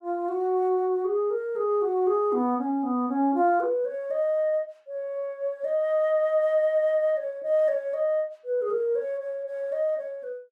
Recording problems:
none

